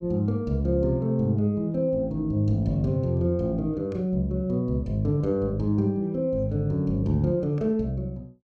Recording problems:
none

